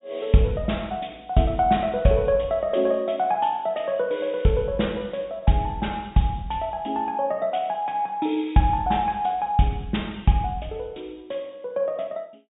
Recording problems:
treble cut off; nothing above 4 kHz

